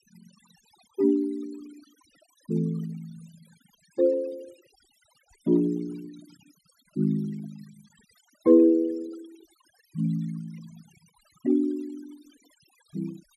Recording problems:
denoising artefacts; signal-to-artefact ratio 25 dB

